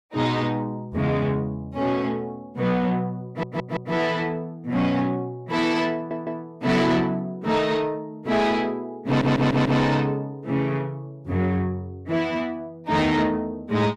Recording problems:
distortion; soft clipping, signal-to-distortion ratio 11 dB
stutter; at 3.5 s, at 6 s and at 9 s

